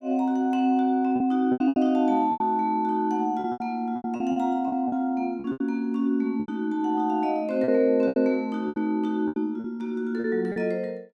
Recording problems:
lost packets; 11% of the sound replaced, filled with repeated pitch periods

